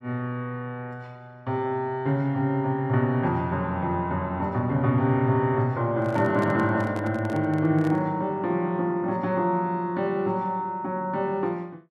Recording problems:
microphone handling noise; from 6 to 8 s; peak -6 dB vs average level

